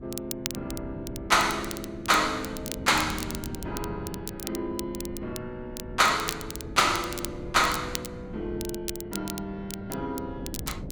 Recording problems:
wind on the microphone; below 280 Hz, SNR 13 dB
crackle; vinyl, SNR 10 dB

